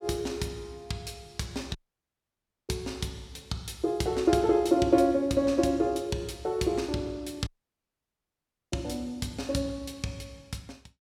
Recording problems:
dropout; at 2 s for 1 s and at 7.5 s for 1.5 s

